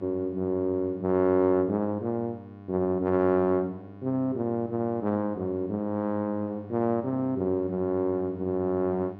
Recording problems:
electrical hum; 50 Hz, harmonics up to 1.8 kHz, SNR 18 dB

